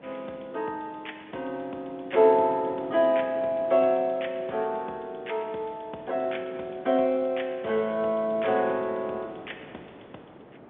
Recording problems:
telephone audio; 280 Hz to 3.6 kHz, G.711
wind noise; below 740 Hz, SNR 20 dB

